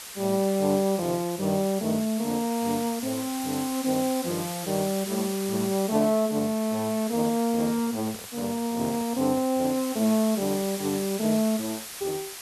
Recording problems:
background hiss; slope +1 dB per octave, SNR 10 dB
handling noise; from 7.5 to 9.5 s; peak -12 dB vs average level

